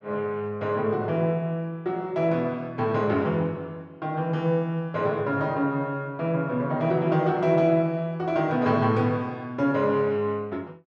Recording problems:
none

